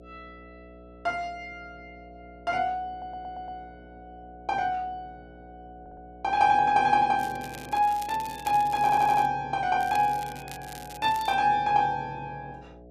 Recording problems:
hum; 60 Hz, harmonics up to 720 Hz, SNR 23 dB
stutter; at 3 s, at 6 s and at 9 s
crackle; from 7 to 9.5 s and from 10 to 11 s; loose cable, SNR 20 dB

